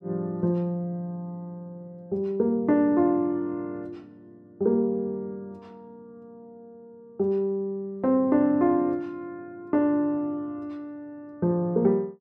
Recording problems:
none

